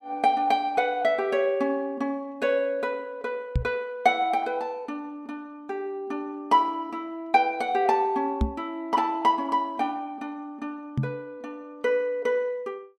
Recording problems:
knock on the microphone; at 3.5 s, at 8.5 s and at 11 s; peak +5 dB vs average level

